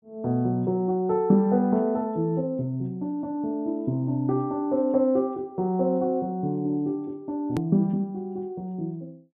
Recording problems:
treble missing; nothing above 4 kHz
edit click; at 7.5 s

